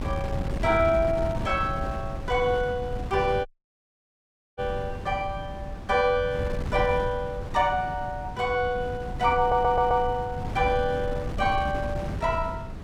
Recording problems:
wind on the microphone; below 200 Hz, SNR 8 dB
audio cutting out; at 3.5 s for 1 s
stutter; at 9.5 s

